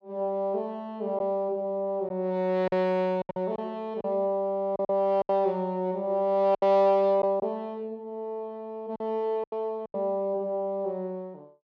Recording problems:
packet loss; 6% of the sound replaced, filled with silence

